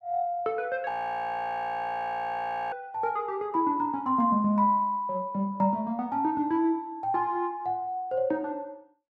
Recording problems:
frozen audio; at 1 s for 2 s

